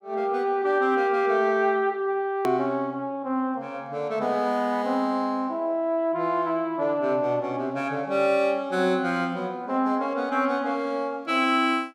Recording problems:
edit click; at 2.5 s

